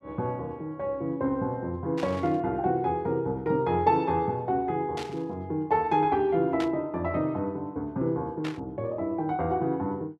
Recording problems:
burst of static; 4 times, first at 2 s; peak -5 dB vs average level

